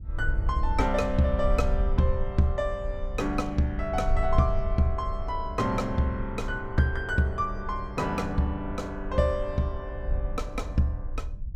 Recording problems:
wind noise; below 64 Hz, SNR 6 dB

